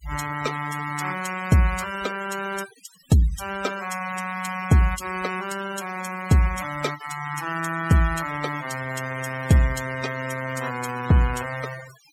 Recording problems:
noise reduction artefacts; signal-to-artefact ratio 12 dB

